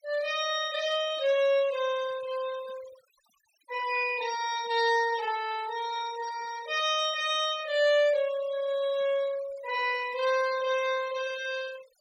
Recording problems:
denoising artefacts; signal-to-artefact ratio 17 dB

